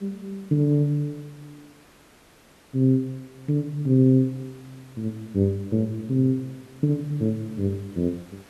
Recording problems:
hiss; slope -4 dB per octave, SNR 28 dB

